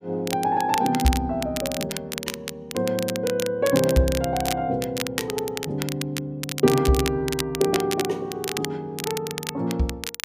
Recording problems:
crackle; vinyl, SNR 7 dB

